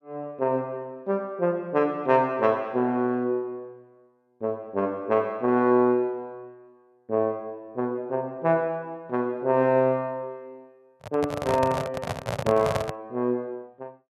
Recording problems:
microphone handling noise; from 11 to 13 s; peak +2 dB vs average level

